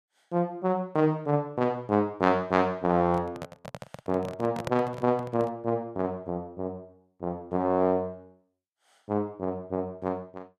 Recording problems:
microphone handling noise; from 3 to 5.5 s; peak 0 dB vs average level

